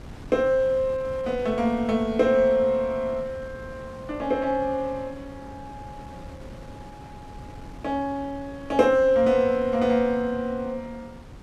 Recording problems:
wind on the microphone; below 400 Hz, SNR 19 dB

